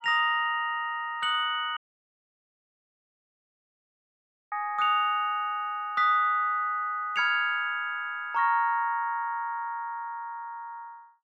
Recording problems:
audio cutting out; at 2 s for 2.5 s

